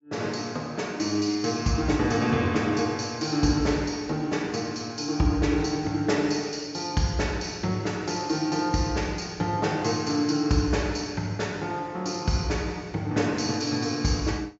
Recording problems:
treble cut off; nothing above 8 kHz

